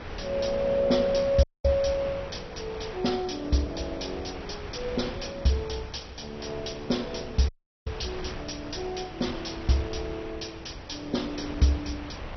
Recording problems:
lossy codec; MP2, log-spectral distance 6 dB, nothing above 5.8 kHz
wind noise; below 1.2 kHz, SNR 11 dB
audio cutting out; at 1.5 s and at 7.5 s

